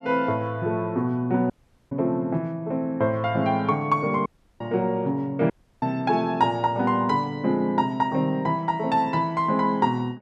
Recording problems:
dropout; at 1.5 s, at 4.5 s and at 5.5 s

